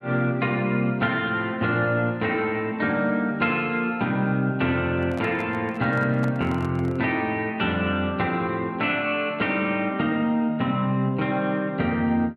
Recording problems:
handling noise; from 5 to 7 s; peak -9 dB vs average level

